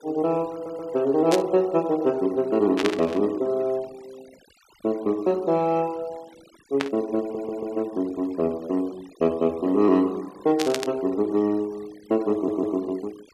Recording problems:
noise reduction artefacts; signal-to-artefact ratio 25 dB
stutter; at 0.5 s, at 7 s and at 12 s
static burst; 4 times, first at 1.5 s; peak +2 dB vs average level

